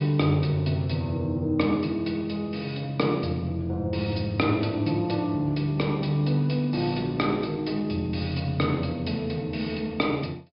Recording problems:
low-pass filter; nothing above 5.5 kHz

